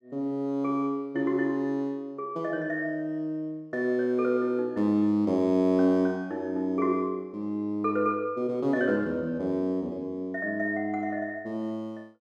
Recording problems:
none

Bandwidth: 12.5 kHz